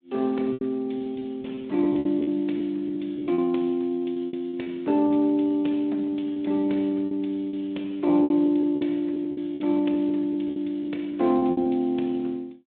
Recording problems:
telephone audio; 220 Hz to 3.7 kHz, Speex
lost packets; 12% of the sound replaced, filled with repeated pitch periods

